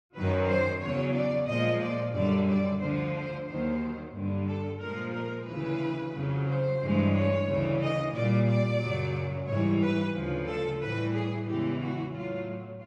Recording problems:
none

